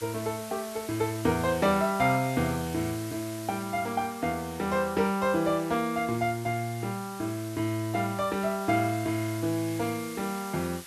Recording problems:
background hiss; slope +1 dB per octave, SNR 14 dB

